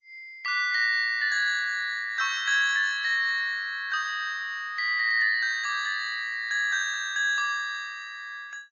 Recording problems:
lossy codec; MP2, then MP3, log-spectral distance 2 dB, nothing above 6 kHz

